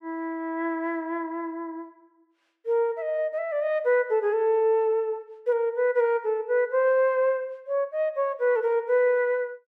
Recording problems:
none

